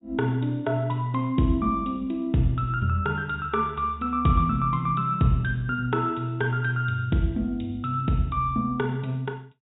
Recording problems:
treble cut off; nothing above 4 kHz

